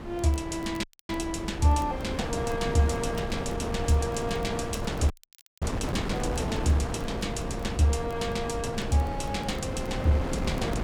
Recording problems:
wind on the microphone; below 560 Hz, SNR 4 dB
crackle; vinyl, SNR 27 dB
dropout; at 1 s and at 5 s for 0.5 s

